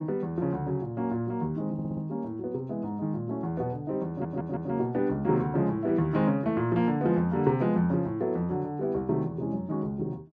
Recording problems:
stutter; at 1.5 s and at 4 s

